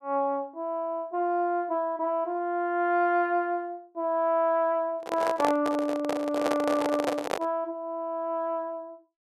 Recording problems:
handling noise; from 5 to 7.5 s; peak +3 dB vs average level

